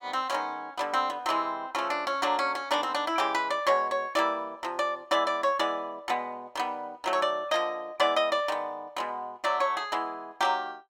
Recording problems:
none

